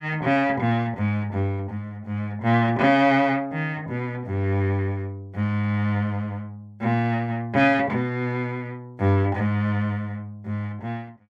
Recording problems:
none

